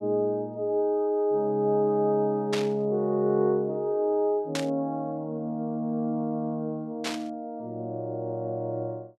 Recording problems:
burst of static; at 2.5 s, at 4.5 s and at 7 s; peak 0 dB vs average level

